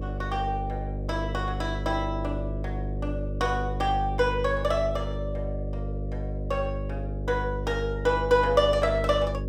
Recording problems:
hum; 50 Hz, harmonics up to 600 Hz, SNR 5 dB

